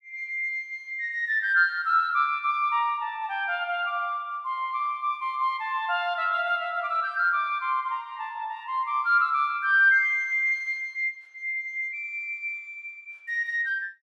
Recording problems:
none

